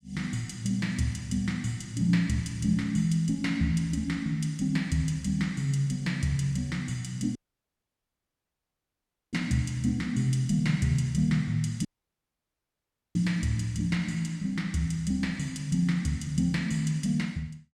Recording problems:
dropout; at 7.5 s for 2 s and at 12 s for 1.5 s

